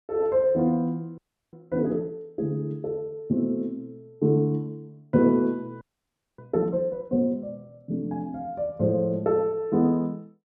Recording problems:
frozen audio; at 1 s and at 6 s for 0.5 s

